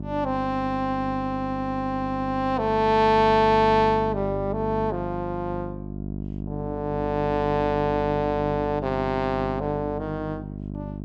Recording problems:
electrical hum; 50 Hz, harmonics up to 700 Hz, SNR 8 dB

